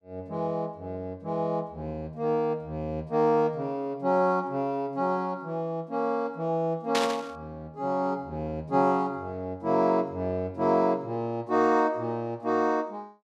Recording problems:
static burst; at 7 s; peak +3 dB vs average level

